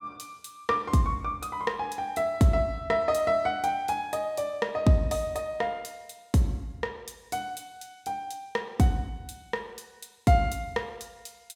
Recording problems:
none

